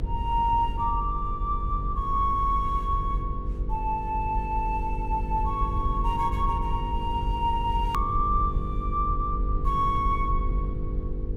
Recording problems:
hum; 50 Hz, harmonics up to 500 Hz, SNR 11 dB
rumble; below 64 Hz, strongest tone 44 Hz, SNR 4 dB
edit click; at 8 s

